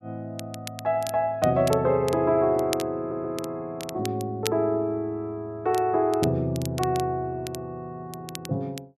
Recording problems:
crackle; vinyl, SNR 14 dB
audio stuttering; at 3 s

